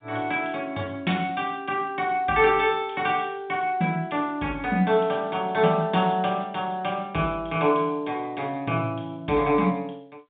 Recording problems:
telephone audio; 130 Hz to 3.7 kHz, G.711

